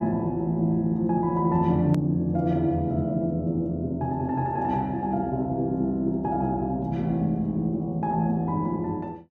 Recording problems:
hard cut with a click; at 2 s

